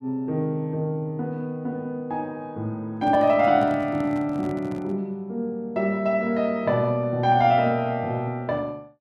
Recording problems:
microphone handling noise; from 3 to 5 s; peak -8 dB vs average level

